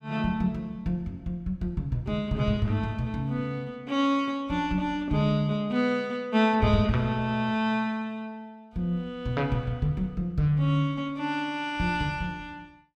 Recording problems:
none

